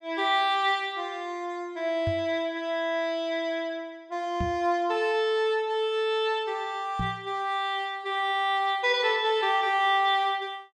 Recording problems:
microphone thump; at 2 s, at 4.5 s and at 7 s; peak -1 dB vs average level

